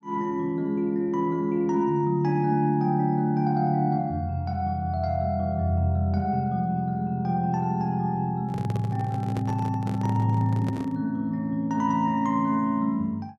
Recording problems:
microphone handling noise; from 8.5 to 11 s; peak -6 dB vs average level

